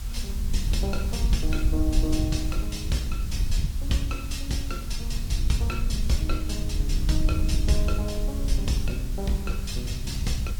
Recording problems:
lossy compression; Vorbis, then Opus, log-spectral distance 2 dB, nothing above 15.5 kHz
background hiss; SNR 13 dB
wind noise; below 64 Hz, SNR -1 dB

